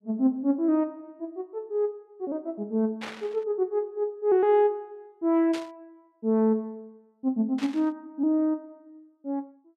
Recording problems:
static burst; at 3 s, at 5.5 s and at 7.5 s; peak -6 dB vs average level

